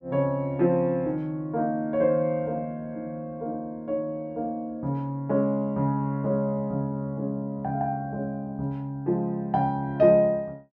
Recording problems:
none

